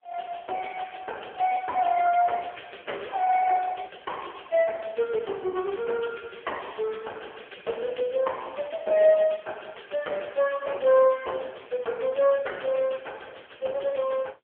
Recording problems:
phone line; 320 Hz to 3.3 kHz, AMR-NB

